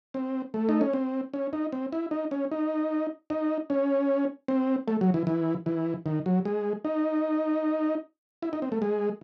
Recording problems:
none

